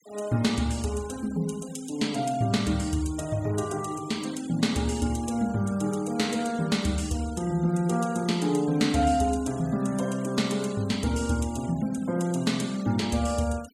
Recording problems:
noise reduction artefacts; signal-to-artefact ratio 19 dB

